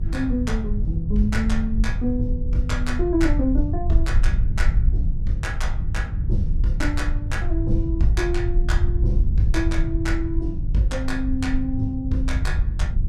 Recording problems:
electrical hum; 50 Hz, harmonics up to 350 Hz, SNR 7 dB
low-frequency rumble; below 64 Hz, SNR -1 dB

